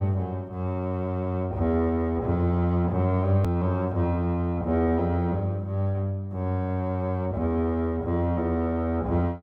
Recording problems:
hard cut with a click; at 3.5 s

